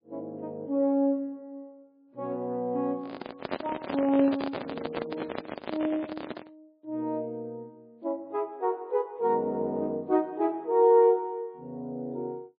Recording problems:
lossy compression; MP3, log-spectral distance 2 dB, nothing above 10.7 kHz
microphone handling noise; from 3 to 6.5 s; peak +1 dB vs average level

